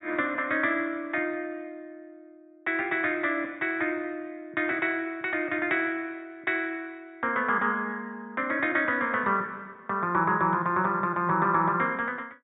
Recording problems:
low-pass filter; nothing above 4 kHz

